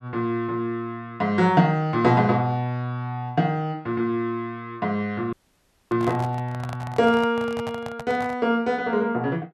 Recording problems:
audio cutting out; at 5.5 s for 0.5 s
handling noise; from 6 to 8.5 s; peak -7 dB vs average level

